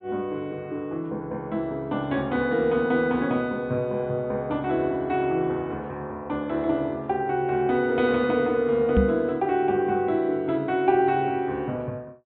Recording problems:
treble cut off; nothing above 4 kHz
microphone thump; at 9 s; peak +7 dB vs average level

